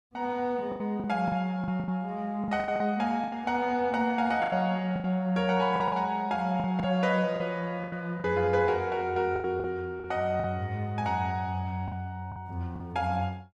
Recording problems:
lost packets; 10% of the sound replaced, filled with the last packet

